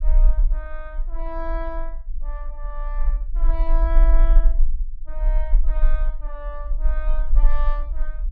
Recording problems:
low-frequency rumble; below 36 Hz, strongest tone 30 Hz, SNR -12 dB

